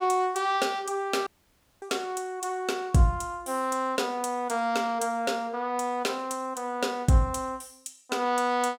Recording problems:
audio cutting out; at 1.5 s for 0.5 s

